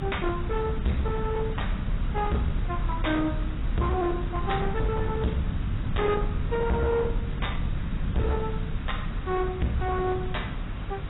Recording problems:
codec artefacts; AAC, log-spectral distance 6 dB, nothing above 3.8 kHz
distortion; hard clipping, signal-to-distortion ratio 7 dB
mains hum; 50 Hz, harmonics up to 300 Hz, SNR 13 dB
hiss; SNR 14 dB
rumble; below 130 Hz, SNR 3 dB

